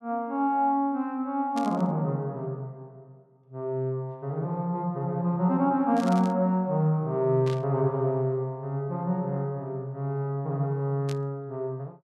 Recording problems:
burst of static; 4 times, first at 1.5 s; peak -9 dB vs average level

